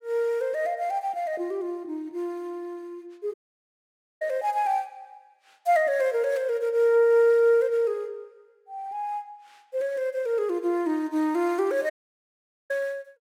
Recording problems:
dropout; at 3.5 s for 1 s and at 12 s for 1 s

